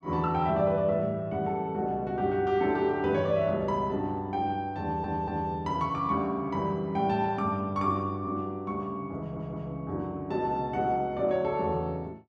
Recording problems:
stutter; at 5 s and at 9 s

